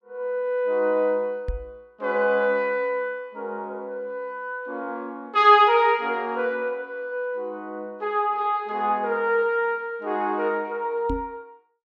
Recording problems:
knock on the microphone; at 1.5 s and at 11 s; peak -2 dB vs average level

